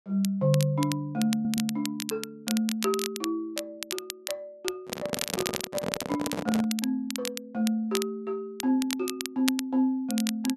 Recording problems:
crackle; vinyl, SNR 6 dB
audio stuttering; at 1.5 s
handling noise; from 5 to 6.5 s; peak +2 dB vs average level

